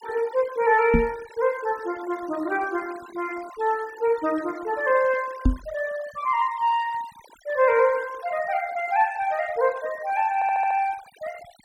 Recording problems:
denoising artefacts; signal-to-artefact ratio 21 dB
microphone thump; at 1 s and at 5.5 s; peak +7 dB vs average level
audio stuttering; at 10 s

